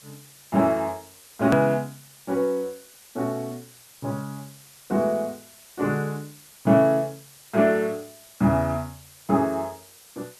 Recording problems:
background hiss; slope +1 dB per octave, SNR 23 dB
edit click; at 1.5 s

